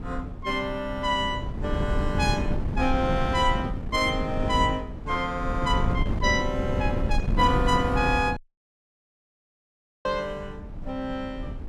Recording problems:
wind noise; below 170 Hz, SNR 3 dB
dropout; at 8.5 s for 1.5 s

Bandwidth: 15.5 kHz